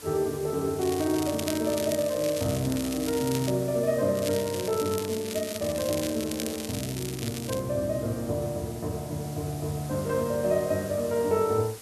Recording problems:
hiss; slope -2 dB per octave, SNR 15 dB
crackle; from 1 to 3.5 s and from 4 to 7.5 s; loose cable, SNR 9 dB

